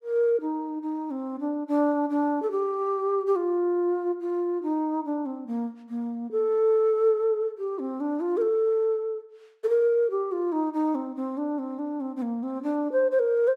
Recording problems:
none

